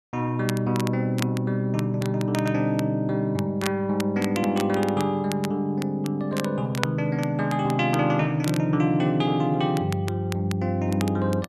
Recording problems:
crackling; vinyl, SNR 14 dB

